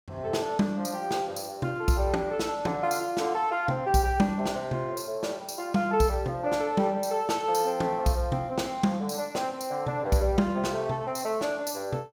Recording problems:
none

